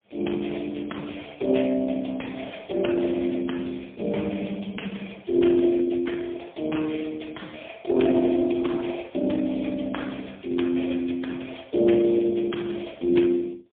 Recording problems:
phone line; 220 Hz to 3.5 kHz, AMR-NB, then MP3

